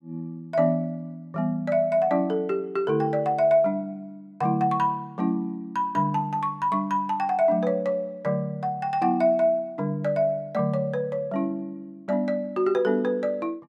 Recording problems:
none

